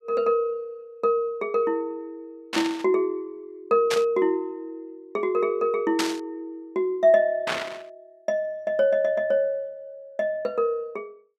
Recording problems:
burst of static; 4 times, first at 2.5 s; peak +3 dB vs average level

